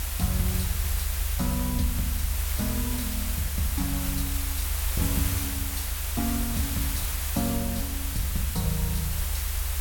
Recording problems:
background hiss; slope 0 dB per octave, SNR -1 dB
low-frequency rumble; below 74 Hz, strongest tone 72 Hz, SNR 0 dB

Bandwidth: 17 kHz